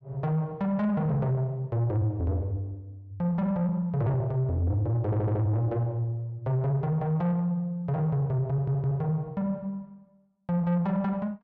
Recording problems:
distortion; soft clipping, signal-to-distortion ratio 11 dB
stutter; at 5 s and at 8.5 s

